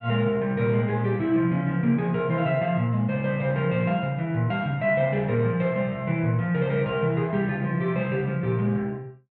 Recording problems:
none

